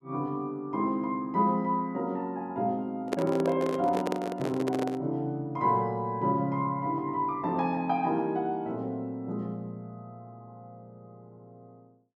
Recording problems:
microphone handling noise; from 3 to 5 s; peak +3 dB vs average level

